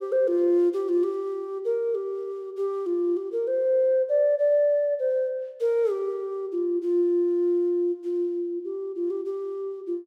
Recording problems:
none

